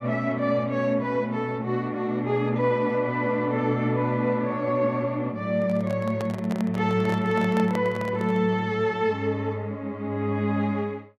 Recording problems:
handling noise; from 5.5 to 8.5 s; peak -4 dB vs average level

